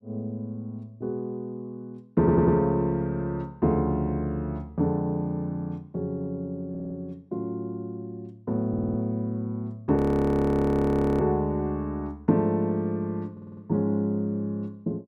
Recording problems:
audio stuttering; 4 times, first at 2 s
audio freezing; at 10 s for 1 s

